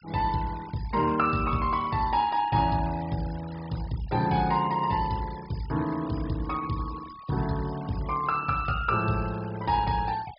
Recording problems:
low-pass filter; nothing above 5.5 kHz
denoising artefacts; signal-to-artefact ratio 19 dB

